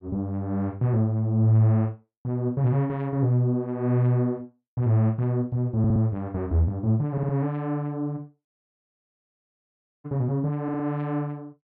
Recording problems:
stutter; at 6 s, at 7 s and at 11 s
dropout; at 8.5 s for 1.5 s

